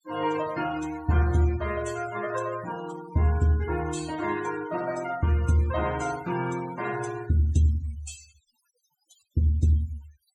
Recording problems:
noise reduction artefacts; signal-to-artefact ratio 15 dB

